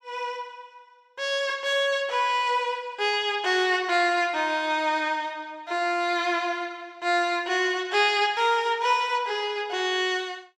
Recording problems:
none

